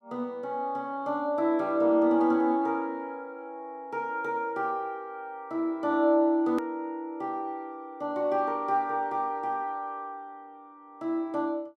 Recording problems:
hard cut with a click; at 6.5 s

